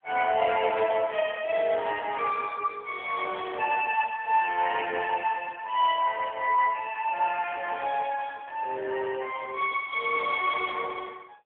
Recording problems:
phone line; 340 Hz to 3.3 kHz, AMR-NB

